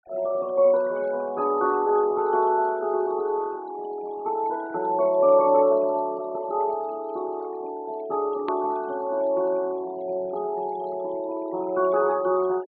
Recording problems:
treble missing; nothing above 4.5 kHz
denoising artefacts; signal-to-artefact ratio 23 dB
click at an edit; at 8.5 s

